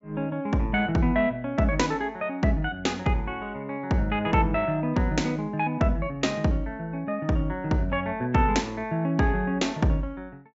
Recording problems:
low-pass filter; nothing above 8 kHz

